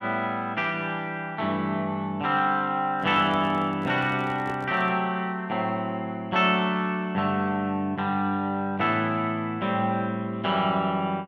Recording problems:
microphone handling noise; from 3 to 5 s; peak -9 dB vs average level

